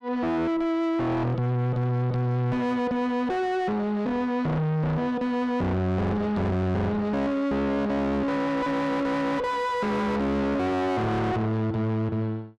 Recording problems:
distortion; soft clipping, signal-to-distortion ratio 5 dB

